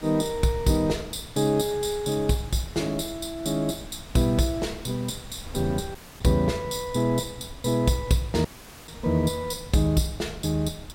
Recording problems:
hiss; slope -2 dB per octave, SNR 22 dB
wind noise; below 160 Hz, SNR 19 dB
audio cutting out; at 6 s and at 8.5 s

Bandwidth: 16 kHz